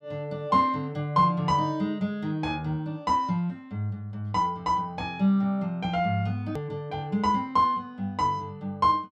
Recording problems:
hard cut with a click; at 6.5 s

